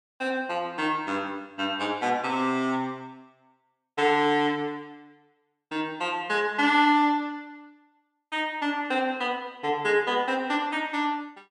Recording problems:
none

